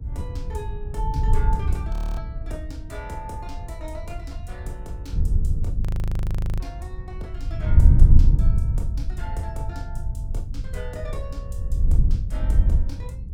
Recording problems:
hum; 50 Hz, harmonics up to 450 Hz, SNR 23 dB
wind on the microphone; below 78 Hz, SNR -14 dB
audio freezing; at 2 s and at 6 s for 1 s

